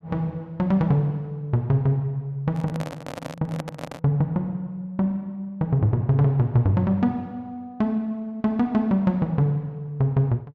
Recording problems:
handling noise; from 2.5 to 4 s; peak -5 dB vs average level

